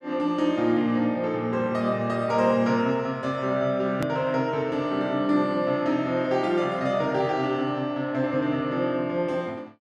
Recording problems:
hard cut with a click; at 4 s

